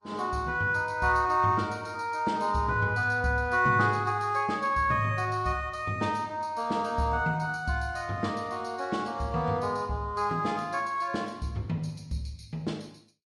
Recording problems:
codec artefacts; Vorbis, log-spectral distance 2 dB, nothing above 11 kHz

